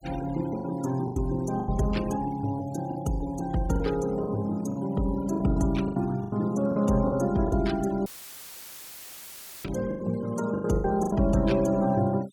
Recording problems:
noise reduction artefacts; signal-to-artefact ratio 20 dB
lost packets; 10% of the sound replaced, filled with the last packet
audio cutting out; at 8 s for 1.5 s; filled with static

